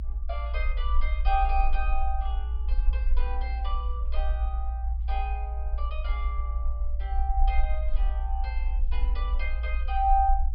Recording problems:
treble missing; nothing above 5.5 kHz
low-frequency rumble; below 58 Hz, SNR -4 dB

